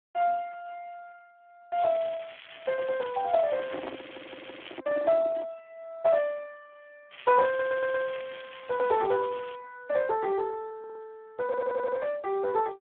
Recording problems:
phone line; 110 Hz to 2 kHz, Speex
crackle; from 2 to 5 s and from 7 to 9.5 s; loose cable, SNR 16 dB
handling noise; from 3.5 to 5.5 s; peak -5 dB vs average level
audio stuttering; 4 times, first at 4 s

